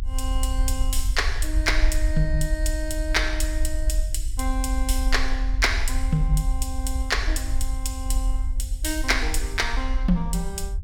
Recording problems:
rumble; below 52 Hz, SNR 0 dB

